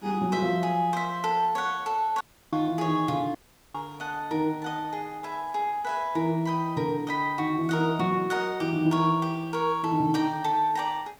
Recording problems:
hiss; slope -4 dB per octave, SNR 28 dB
dropout; at 2 s and at 3.5 s

